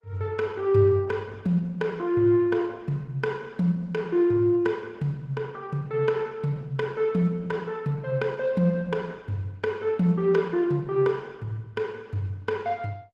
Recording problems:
codec artefacts; Opus, log-spectral distance 2 dB, nothing above 14.6 kHz

